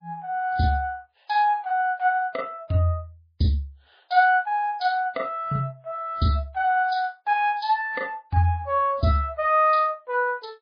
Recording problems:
codec artefacts; MP3, log-spectral distance 2 dB, nothing above 5 kHz

